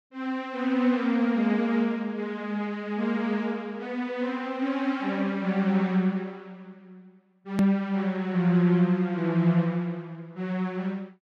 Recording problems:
click at an edit; at 7.5 s

